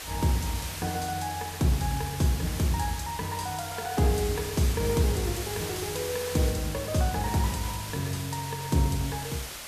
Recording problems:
background hiss; slope 0 dB per octave, SNR 8 dB
wind on the microphone; below 1.3 kHz, SNR 26 dB

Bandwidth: 14.5 kHz